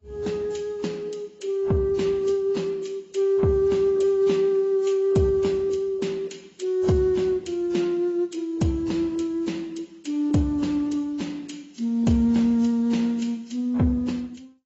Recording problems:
codec artefacts; AAC, then AAC, log-spectral distance 3 dB, nothing above 7.6 kHz

